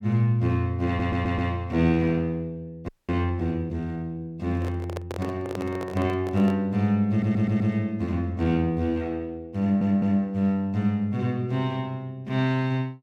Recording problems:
audio stuttering; at 1 s, at 7 s and at 9.5 s
audio freezing; at 3 s
microphone handling noise; from 4.5 to 6.5 s; peak -4 dB vs average level

